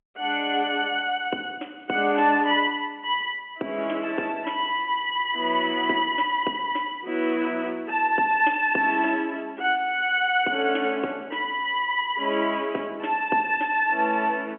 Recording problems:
phone line; 240 Hz to 3.3 kHz, G.711

